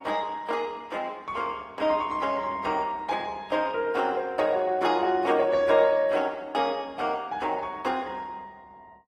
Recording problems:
codec artefacts; AAC, then Opus, log-spectral distance 2 dB

